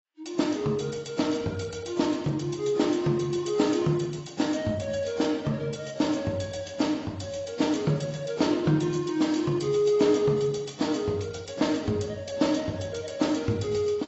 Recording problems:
lossy compression; AAC, log-spectral distance 5 dB, nothing above 7.6 kHz

